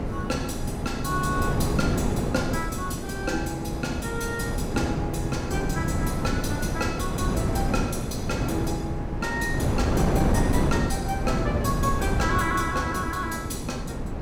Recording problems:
wind noise; below 360 Hz, SNR -1 dB

